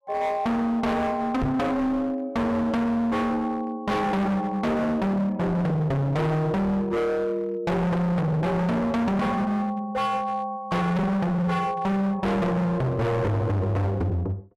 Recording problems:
distorted audio; hard clipping, signal-to-distortion ratio 6 dB
knock on the microphone; at 1.5 s; peak +3 dB vs average level

